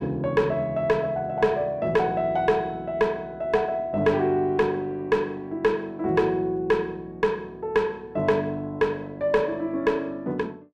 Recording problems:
distorted audio; soft clipping, signal-to-distortion ratio 10 dB

